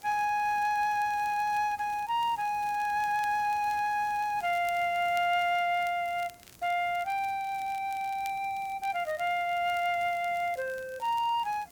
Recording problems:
hiss; SNR 25 dB
crackling; vinyl, SNR 25 dB

